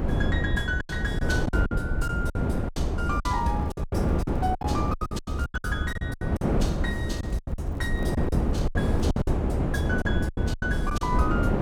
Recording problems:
low-frequency rumble; below 86 Hz, SNR 0 dB
wind on the microphone; below 390 Hz, SNR -3 dB
packet loss; 15% of the sound replaced, filled with silence
crackling; from 3 to 5.5 s and from 6.5 to 9 s; loose cable, SNR 29 dB

